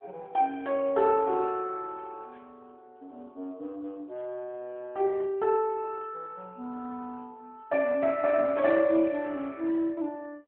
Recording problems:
telephone audio; 190 Hz to 3.6 kHz, AMR-NB

